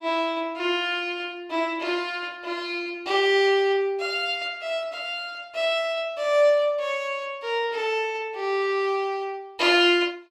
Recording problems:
none

